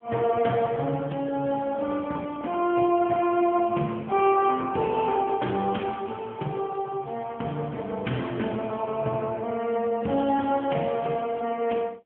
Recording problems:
telephone audio; 170 Hz to 3.3 kHz, AMR-NB

